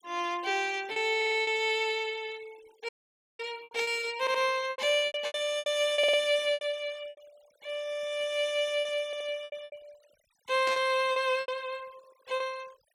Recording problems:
noise reduction artefacts; signal-to-artefact ratio 25 dB
lost packets; 12% of the sound replaced, filled with repeated pitch periods
stutter; 4 times, first at 1 s
audio cutting out; at 3 s for 0.5 s
burst of static; at 11 s; peak -5 dB vs average level

